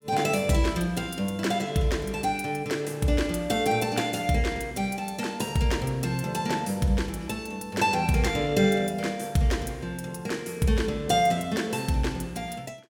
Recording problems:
none

